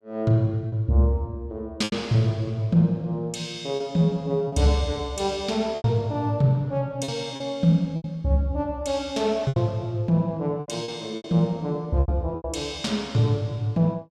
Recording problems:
lost packets; 6% of the sound replaced, filled with repeated pitch periods

